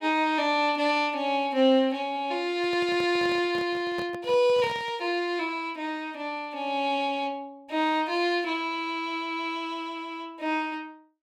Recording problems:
microphone handling noise; from 2.5 to 5 s; peak -8 dB vs average level

